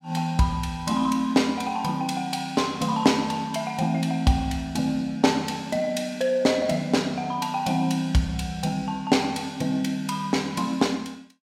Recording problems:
none

